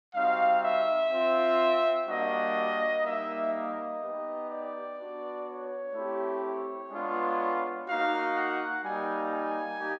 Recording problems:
none

